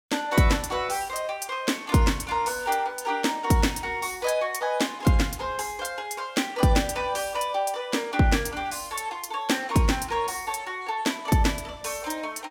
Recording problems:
none

